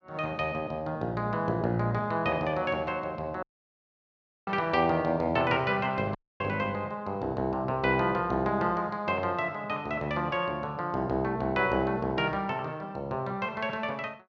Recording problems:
dropout; at 3.5 s for 1 s and at 6 s

